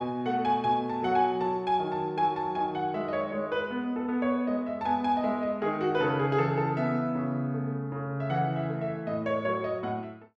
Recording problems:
none

